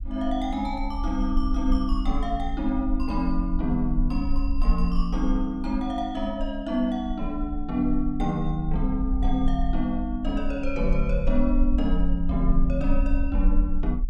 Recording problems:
rumble; below 44 Hz, strongest tone 22 Hz, SNR 3 dB

